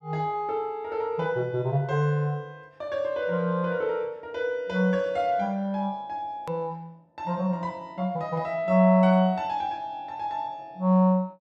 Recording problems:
hard cut with a click; at 6.5 s

